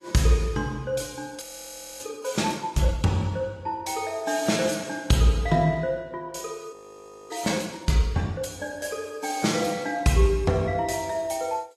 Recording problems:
lossy compression; AAC, log-spectral distance 4 dB, nothing above 15.1 kHz
audio freezing; at 1.5 s for 0.5 s and at 6.5 s for 0.5 s

